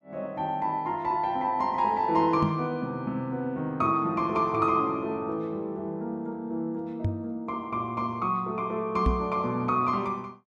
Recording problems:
microphone bump; at 2.5 s, at 7 s and at 9 s; peak +5 dB vs average level

